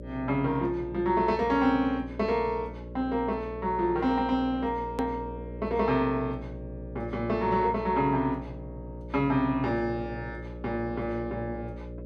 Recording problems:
hum; 60 Hz, harmonics up to 600 Hz, SNR 12 dB
edit click; at 5 s

